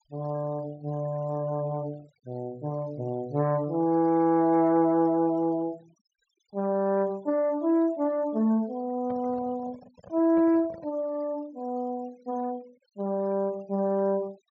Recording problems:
treble missing; nothing above 8 kHz
noise reduction artefacts; signal-to-artefact ratio 28 dB
handling noise; from 9 to 11 s; peak -12 dB vs average level

